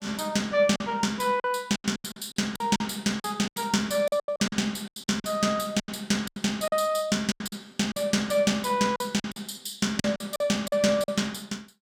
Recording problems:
packet loss; 13% of the sound replaced, filled with silence

